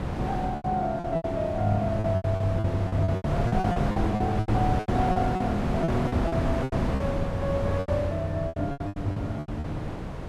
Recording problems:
wind on the microphone; below 540 Hz, SNR 2 dB
packet loss; 17% of the sound replaced, filled with repeated pitch periods

